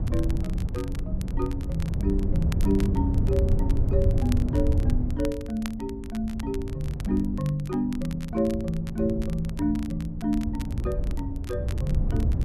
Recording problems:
wind noise; below 110 Hz, SNR -1 dB
crackle; vinyl, SNR 18 dB

